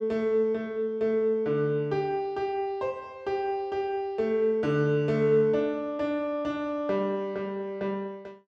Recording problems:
none

